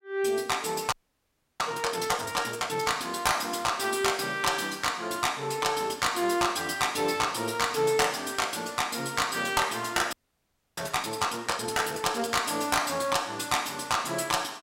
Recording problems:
distorted audio; hard clipping, uneven, signal-to-distortion ratio 11 dB
frozen audio; at 1 s for 0.5 s and at 10 s for 0.5 s

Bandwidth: 16 kHz